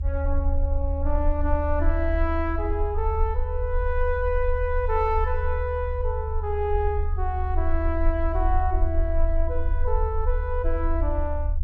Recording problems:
rumble; below 74 Hz, strongest tone 24 Hz, SNR -1 dB

